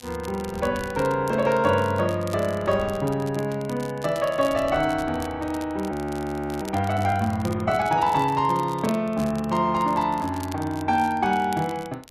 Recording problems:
wind noise; below 580 Hz, SNR 19 dB
crackle; vinyl, SNR 20 dB
frozen audio; at 6 s for 0.5 s

